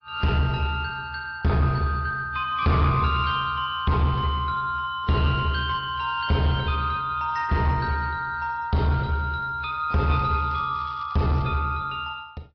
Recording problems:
treble missing; nothing above 5.5 kHz
codec artefacts; AAC, log-spectral distance 2 dB
distortion; soft clipping, signal-to-distortion ratio 12 dB
crackle; from 10 to 11 s; loose cable, SNR 26 dB

